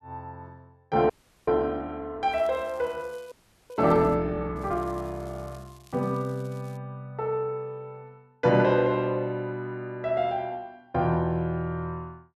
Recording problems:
audio freezing; at 1 s and at 3.5 s
crackle; from 2.5 to 4 s and from 4.5 to 7 s; loose cable, SNR 29 dB

